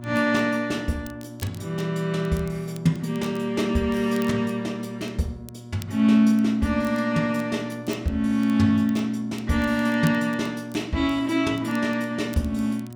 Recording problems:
hum; 60 Hz, harmonics up to 960 Hz, SNR 17 dB
crackle; vinyl, SNR 25 dB

